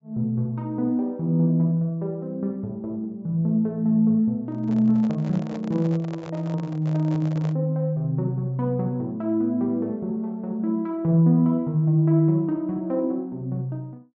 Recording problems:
treble missing; nothing above 8 kHz
handling noise; from 4.5 to 7.5 s; peak -10 dB vs average level

